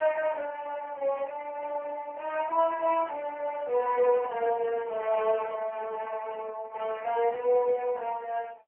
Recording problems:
telephone audio; 340 Hz to 3 kHz, AMR-NB

